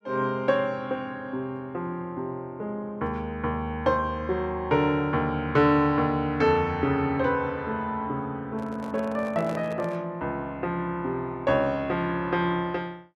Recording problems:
handling noise; from 8.5 to 10 s; peak -5 dB vs average level

